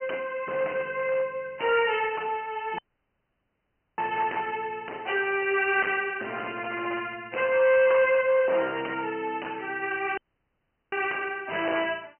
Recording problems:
phone line; 320 Hz to 3.1 kHz, G.726
distortion; hard clipping, signal-to-distortion ratio 9 dB
dropout; at 3 s for 1 s and at 10 s for 1 s

